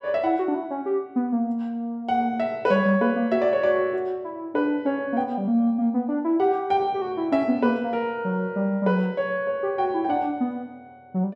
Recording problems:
none

